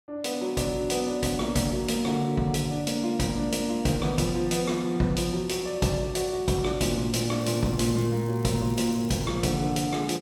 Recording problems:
crackle; from 7.5 to 9.5 s; loose cable, SNR 23 dB

